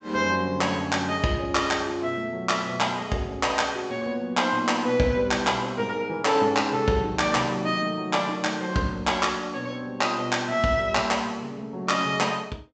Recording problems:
treble missing; nothing above 8 kHz

